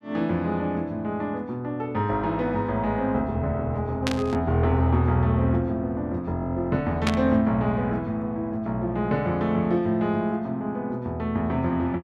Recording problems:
burst of static; at 4 s and at 7 s; peak +2 dB vs average level

